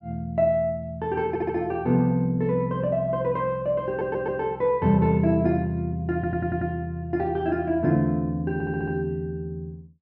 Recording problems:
treble missing; nothing above 8 kHz
audio stuttering; 4 times, first at 1.5 s

